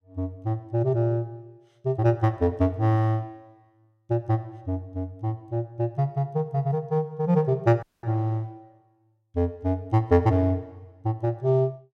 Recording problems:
audio cutting out; at 8 s

